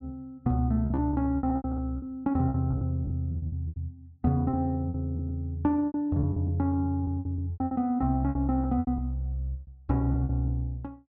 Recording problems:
packet loss; 14% of the sound replaced, filled with repeated pitch periods

